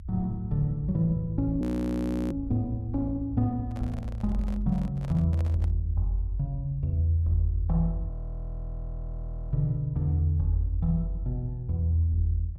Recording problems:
low-frequency rumble; below 80 Hz, SNR 14 dB
frozen audio; at 1.5 s for 0.5 s and at 8 s for 1.5 s
microphone handling noise; from 3.5 to 5.5 s; peak -10 dB vs average level

